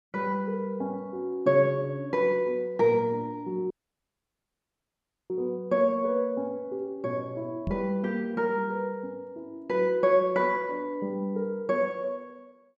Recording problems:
dropout; at 3.5 s for 1.5 s
microphone thump; at 7.5 s; peak -1 dB vs average level

